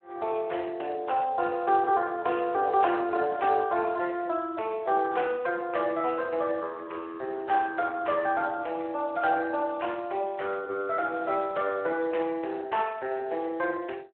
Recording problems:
phone line; 300 Hz to 3 kHz, Speex

